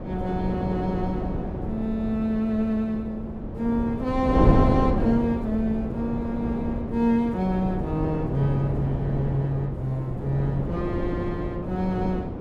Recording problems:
wind on the microphone; below 370 Hz, SNR 2 dB

